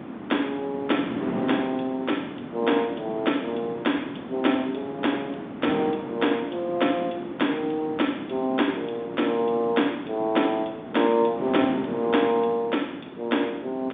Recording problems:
telephone audio; 190 Hz to 3.6 kHz, G.711
wind on the microphone; below 550 Hz, SNR 10 dB

